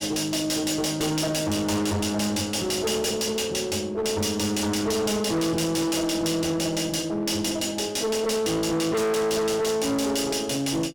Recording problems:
distortion; hard clipping, uneven, signal-to-distortion ratio 6 dB

